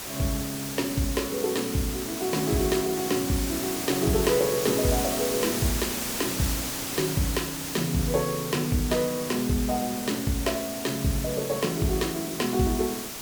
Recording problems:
hiss; slope -2 dB per octave, SNR 4 dB

